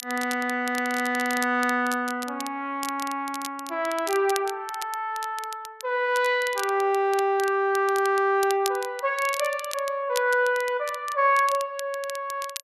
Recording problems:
crackle; vinyl, SNR 13 dB

